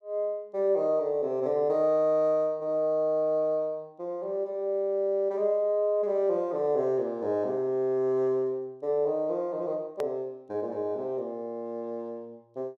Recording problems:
hard cut with a click; at 10 s

